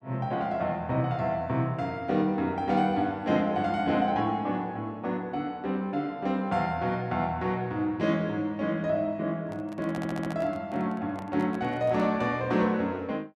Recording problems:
handling noise; from 9.5 to 12 s; peak -7 dB vs average level
audio stuttering; at 10 s

